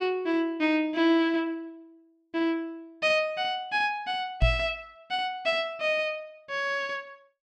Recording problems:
microphone bump; at 4.5 s; peak +7 dB vs average level

